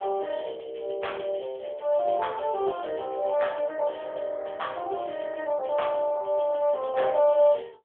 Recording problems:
telephone audio; 320 Hz to 3.4 kHz, AMR-NB

